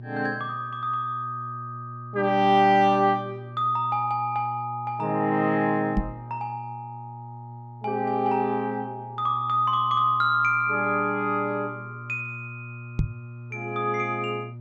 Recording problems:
hum; 60 Hz, harmonics up to 600 Hz, SNR 16 dB
microphone bump; at 6 s and at 13 s; peak +3 dB vs average level

